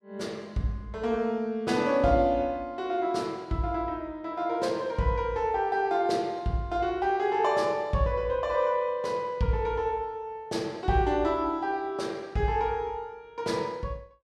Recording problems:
none

